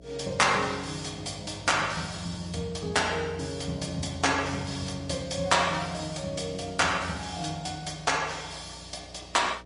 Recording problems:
lossy compression; MP3, log-spectral distance 5 dB, nothing above 10.4 kHz
hum; 60 Hz, harmonics up to 660 Hz, SNR 22 dB

